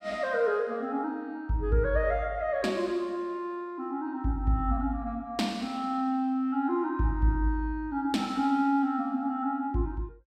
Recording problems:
none

